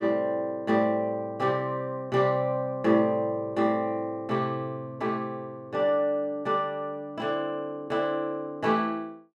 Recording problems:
none

